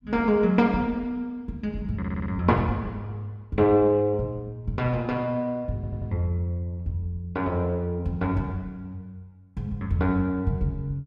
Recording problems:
audio stuttering; at 2 s and at 6 s

